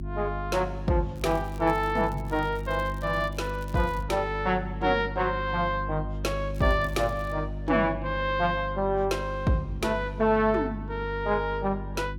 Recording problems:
hum; 50 Hz, harmonics up to 350 Hz, SNR 8 dB
crackle; from 1 to 4 s and at 6.5 s; loose cable, SNR 26 dB

